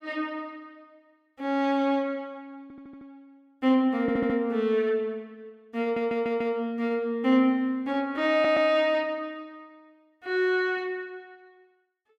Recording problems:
audio stuttering; 4 times, first at 2.5 s

